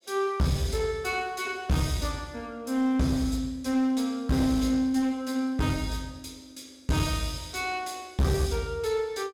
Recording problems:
distorted audio; hard clipping, uneven, signal-to-distortion ratio 10 dB

